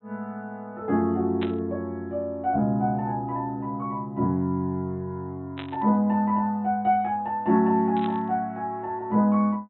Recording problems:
treble missing; nothing above 4 kHz
burst of static; at 1.5 s, at 5.5 s and at 8 s; peak -6 dB vs average level

